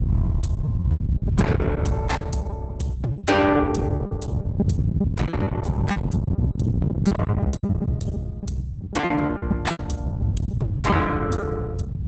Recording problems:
codec artefacts; Opus, log-spectral distance 2 dB, nothing above 8 kHz
distorted audio; soft clipping, signal-to-distortion ratio 6 dB
low-frequency rumble; below 190 Hz, SNR -1 dB
lost packets; 16% of the sound replaced, filled with repeated pitch periods

